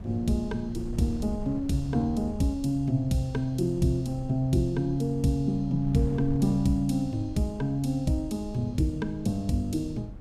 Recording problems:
wind noise; below 120 Hz, SNR 14 dB

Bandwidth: 15 kHz